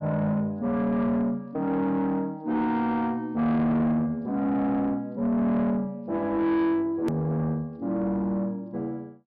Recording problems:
treble missing; nothing above 5.5 kHz
distorted audio; soft clipping, signal-to-distortion ratio 10 dB
click at an edit; at 7 s

